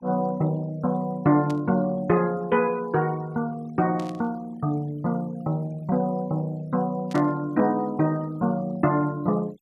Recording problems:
denoising artefacts; signal-to-artefact ratio 27 dB
static burst; at 1.5 s, at 4 s and at 7 s; peak -13 dB vs average level

